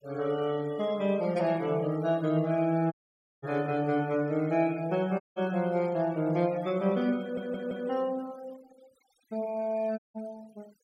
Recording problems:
noise reduction artefacts; signal-to-artefact ratio 23 dB
dropout; at 3 s for 0.5 s, at 5 s and at 10 s
audio stuttering; at 7 s

